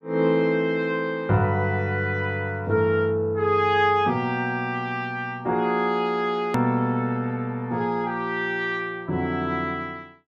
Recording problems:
click at an edit; at 6.5 s

